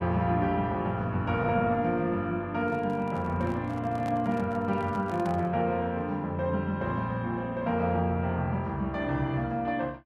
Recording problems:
microphone handling noise; from 2.5 to 5.5 s; peak -8 dB vs average level

